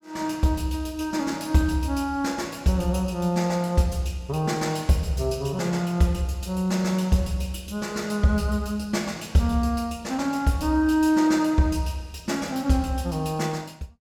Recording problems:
none

